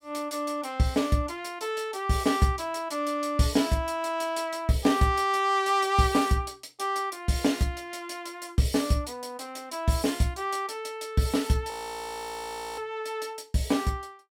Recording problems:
audio freezing; at 12 s for 1 s

